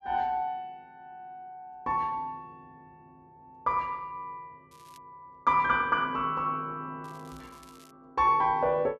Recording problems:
crackling; at 4.5 s and at 7 s; loose cable, SNR 29 dB

